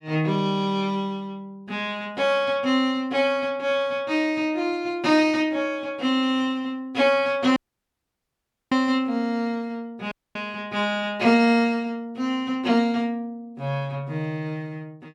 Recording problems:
audio cutting out; at 7.5 s for 1 s and at 10 s

